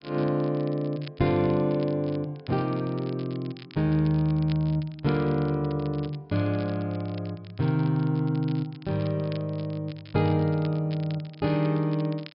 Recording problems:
treble missing; nothing above 5.5 kHz
crackle; vinyl, SNR 23 dB

